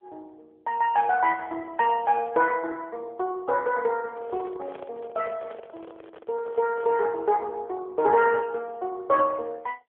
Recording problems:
phone line; 340 Hz to 2.8 kHz, AMR-NB
microphone handling noise; from 4 to 7 s; peak -10 dB vs average level

